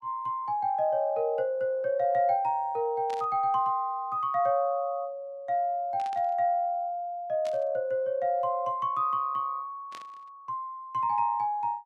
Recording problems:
static burst; 4 times, first at 3 s; peak -13 dB vs average level

